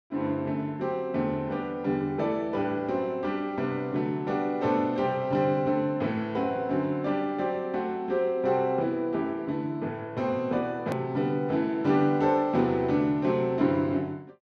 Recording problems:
click at an edit; at 11 s

